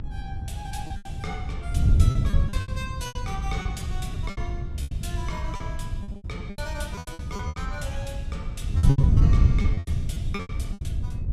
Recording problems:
hum; 50 Hz, harmonics up to 700 Hz, SNR 8 dB
wind on the microphone; below 120 Hz, SNR -10 dB
packet loss; 15% of the sound replaced, filled with repeated pitch periods

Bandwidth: 14.5 kHz